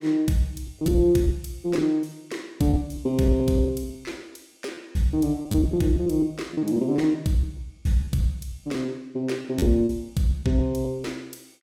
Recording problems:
lost packets; 12% of the sound replaced, filled with repeated pitch periods

